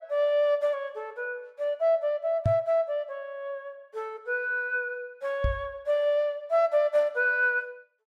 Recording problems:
microphone thump; at 2.5 s and at 5.5 s; peak +4 dB vs average level

